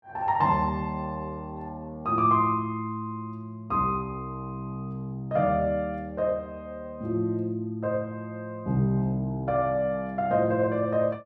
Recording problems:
none

